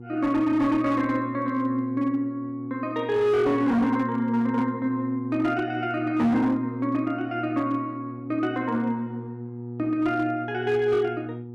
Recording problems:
distortion; hard clipping, signal-to-distortion ratio 12 dB
hum; 60 Hz, harmonics up to 840 Hz, SNR 12 dB

